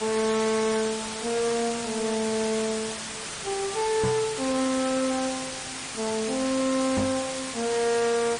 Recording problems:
lossy codec; MP3, then MP3, log-spectral distance 14 dB
distorted audio; soft clipping, signal-to-distortion ratio 9 dB
hiss; slope 0 dB per octave, SNR 6 dB
microphone bump; at 4 s and at 7 s; peak +4 dB vs average level

